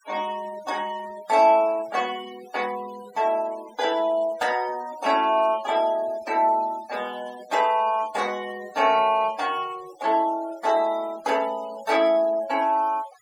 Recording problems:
noise reduction artefacts; signal-to-artefact ratio 20 dB

